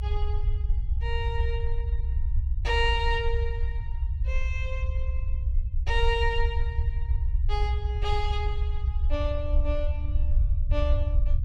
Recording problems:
low-frequency rumble; below 66 Hz, SNR -3 dB

